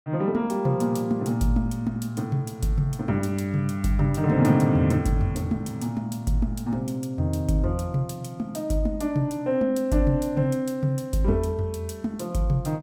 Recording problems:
none

